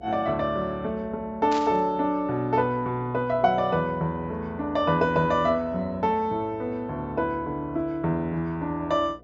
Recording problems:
treble missing; nothing above 8 kHz
hum; 60 Hz, harmonics up to 720 Hz, SNR 24 dB
static burst; at 1.5 s; peak -7 dB vs average level

